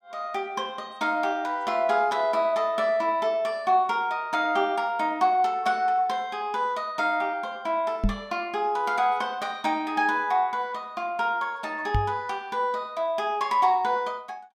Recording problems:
microphone bump; at 8 s and at 12 s; peak +4 dB vs average level

